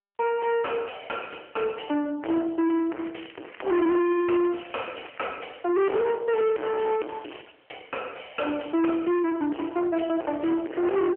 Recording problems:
phone line; 240 Hz to 2.6 kHz, AMR-NB
distorted audio; soft clipping, signal-to-distortion ratio 5 dB
crackling; from 2.5 to 5.5 s; loose cable, SNR 23 dB

